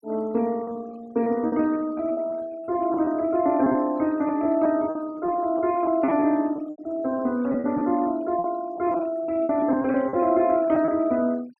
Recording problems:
noise reduction artefacts; signal-to-artefact ratio 24 dB
lost packets; 10% of the sound replaced, filled with repeated pitch periods

